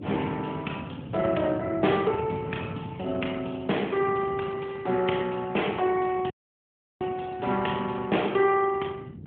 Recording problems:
phone line; 170 Hz to 3.3 kHz, AMR-NB
wind on the microphone; below 250 Hz, SNR 14 dB
audio cutting out; at 6.5 s for 0.5 s

